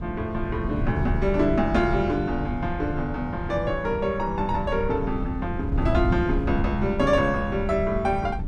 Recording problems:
wind on the microphone; below 140 Hz, SNR 5 dB

